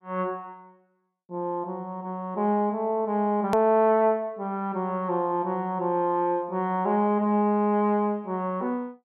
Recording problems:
edit click; at 3.5 s

